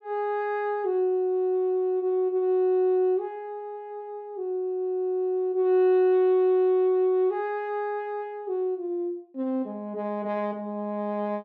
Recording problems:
none

